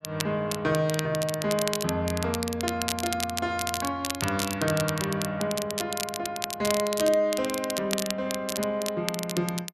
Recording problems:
crackling; vinyl, SNR 5 dB

